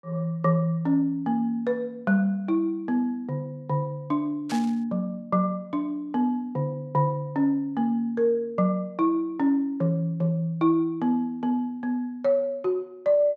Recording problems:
static burst; at 4.5 s; peak -7 dB vs average level

